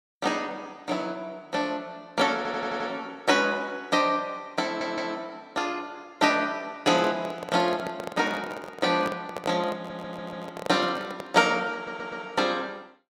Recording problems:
stutter; 4 times, first at 2.5 s
handling noise; from 7 to 11 s; peak -2 dB vs average level

